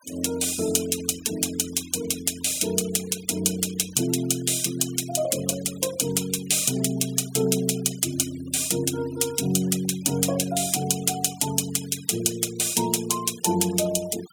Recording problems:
denoising artefacts; signal-to-artefact ratio 16 dB

